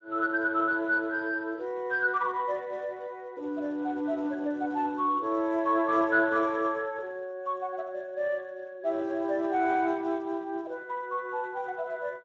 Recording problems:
codec artefacts; Speex, log-spectral distance 2 dB

